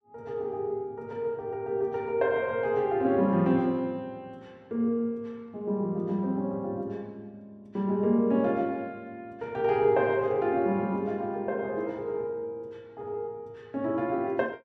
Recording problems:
none

